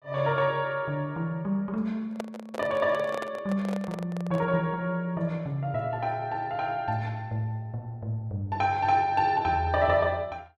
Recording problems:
handling noise; from 2 to 4.5 s; peak -3 dB vs average level

